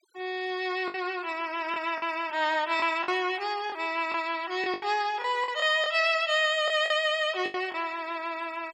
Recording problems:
noise reduction artefacts; signal-to-artefact ratio 23 dB
packet loss; 7% of the sound replaced, filled with the last packet

